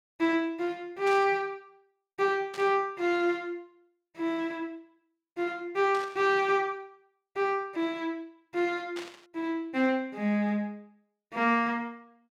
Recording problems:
burst of static; 4 times, first at 1 s; peak -8 dB vs average level

